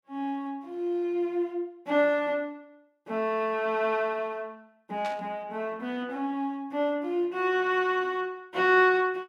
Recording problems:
burst of static; at 5 s; peak -9 dB vs average level

